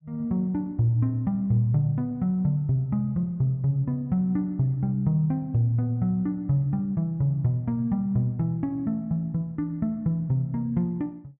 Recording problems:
none

